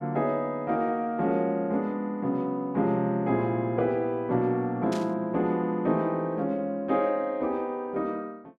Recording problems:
burst of static; at 5 s; peak -8 dB vs average level

